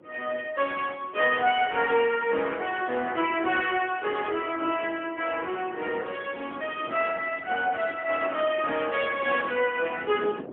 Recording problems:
phone line; 280 Hz to 3.3 kHz, AMR-NB, then MP3
wind on the microphone; below 520 Hz, SNR 18 dB

